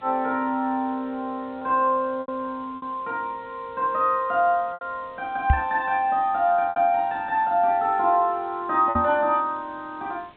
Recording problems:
low-pass filter; nothing above 4 kHz
background hiss; SNR 29 dB
packet loss; 4% of the sound replaced, filled with repeated pitch periods
microphone bump; at 5.5 s and at 9 s; peak +7 dB vs average level

